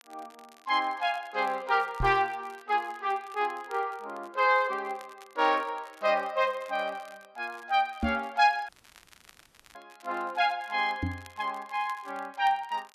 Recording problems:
crackle; vinyl, SNR 27 dB
microphone bump; at 2 s, at 8 s and at 11 s; peak +3 dB vs average level
audio cutting out; at 8.5 s for 1 s

